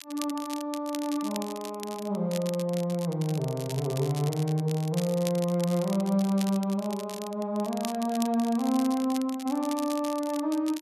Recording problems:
crackling; vinyl, SNR 14 dB

